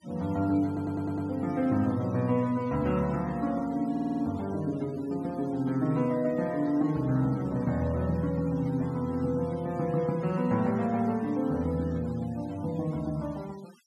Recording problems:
denoising artefacts; signal-to-artefact ratio 23 dB
stutter; at 0.5 s and at 4 s

